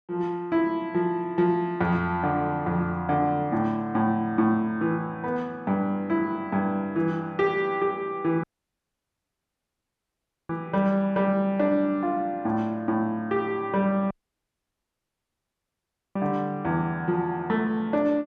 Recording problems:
dropout; at 8.5 s for 2 s and at 14 s for 2 s

